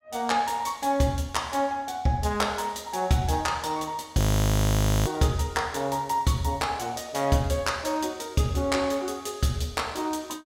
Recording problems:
audio freezing; at 4 s for 1 s

